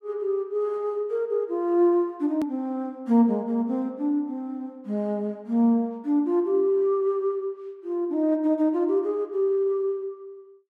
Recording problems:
edit click; at 2.5 s

